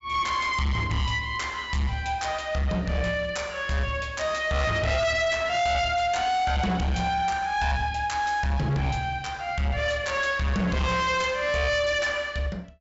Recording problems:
treble missing; nothing above 8 kHz
distorted audio; hard clipping, uneven, signal-to-distortion ratio 7 dB

